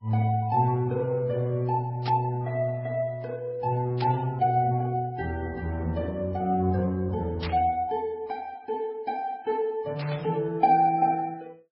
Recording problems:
lossy compression; MP3, then Vorbis, log-spectral distance 2 dB
burst of static; 4 times, first at 2 s; peak -5 dB vs average level

